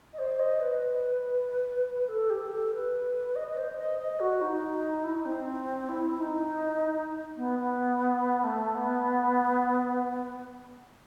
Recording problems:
background hiss; SNR 29 dB

